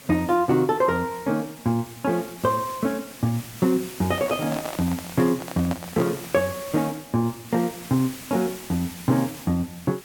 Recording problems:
hiss; slope -1 dB per octave, SNR 14 dB
handling noise; from 4 to 6.5 s; peak -2 dB vs average level

